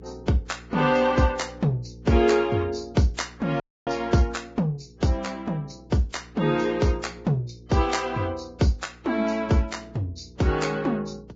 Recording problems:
codec artefacts; Vorbis, log-spectral distance 4 dB, nothing above 7.3 kHz
electrical hum; 60 Hz, harmonics up to 480 Hz, SNR 23 dB
audio cutting out; at 3.5 s

